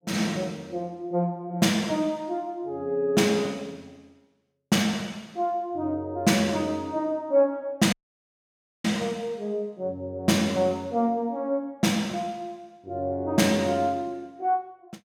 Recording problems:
dropout; at 8 s for 1 s

